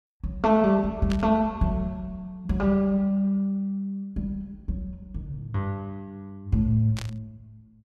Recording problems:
burst of static; at 1 s and at 7 s; peak -6 dB vs average level

